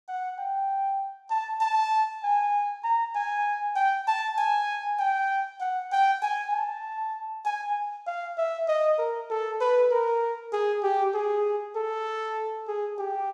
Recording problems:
none

